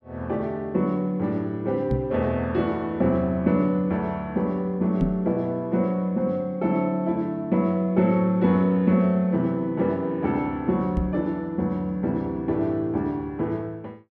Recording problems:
microphone bump; at 2 s, at 5 s and at 11 s; peak +4 dB vs average level

